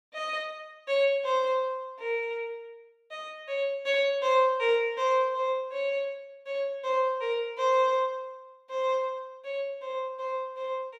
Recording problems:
none

